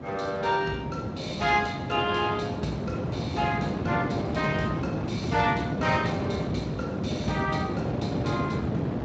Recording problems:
lossy codec; Speex, log-spectral distance 3 dB, nothing above 7.3 kHz
wind noise; below 430 Hz, SNR 1 dB

